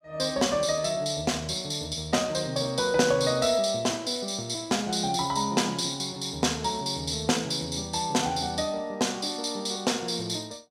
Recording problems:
none

